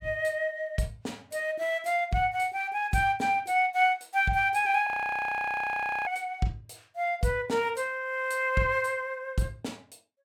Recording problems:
frozen audio; at 5 s for 1 s

